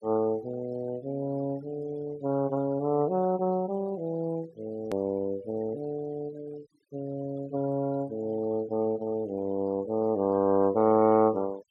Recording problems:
denoising artefacts; signal-to-artefact ratio 24 dB
hard cut with a click; at 5 s

